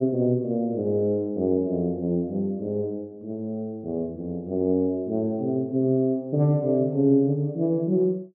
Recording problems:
none

